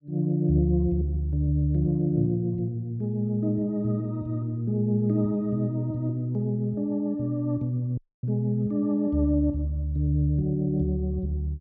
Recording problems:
treble missing; nothing above 6.6 kHz
dropout; at 8 s

